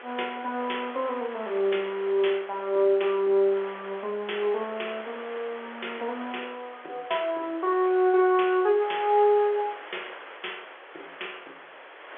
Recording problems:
telephone audio; 280 Hz to 3.4 kHz, G.711
hiss; SNR 16 dB

